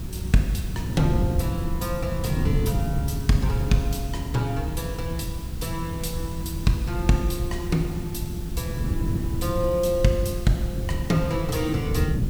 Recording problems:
background hiss; slope -2 dB per octave, SNR 18 dB
low-frequency rumble; below 70 Hz, SNR 10 dB
wind noise; below 160 Hz, SNR 4 dB

